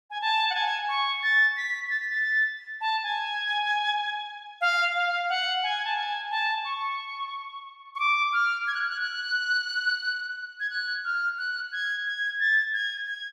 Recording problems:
none

